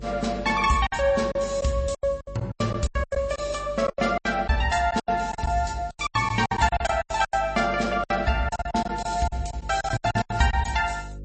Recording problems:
lossy compression; MP3, log-spectral distance 4 dB, nothing above 8.2 kHz
hum; 50 Hz, harmonics up to 550 Hz, SNR 16 dB
lost packets; 17% of the sound replaced, filled with silence

